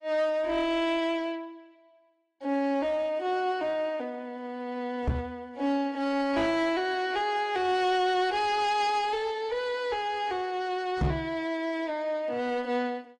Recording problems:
lossy compression; AAC, log-spectral distance 2 dB, nothing above 10.4 kHz
distortion; hard clipping, uneven, signal-to-distortion ratio 11 dB
microphone thump; at 5 s and at 11 s; peak +4 dB vs average level

